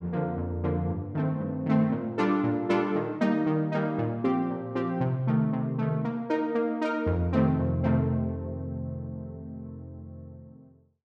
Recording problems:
none

